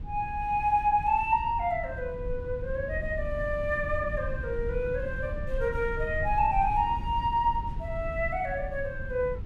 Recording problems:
low-frequency rumble; below 94 Hz, SNR 9 dB

